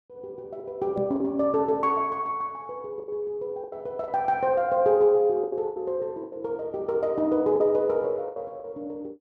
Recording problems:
lost packets; 8% of the sound replaced, filled with the last packet
microphone bump; at 1 s; peak -3 dB vs average level

